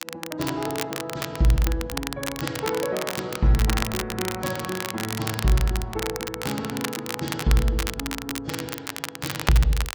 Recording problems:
lossy codec; AAC, then G.722, log-spectral distance 2 dB
crackle; vinyl, SNR 5 dB

